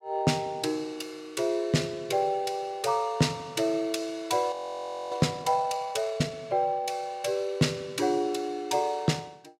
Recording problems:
frozen audio; at 4.5 s for 0.5 s

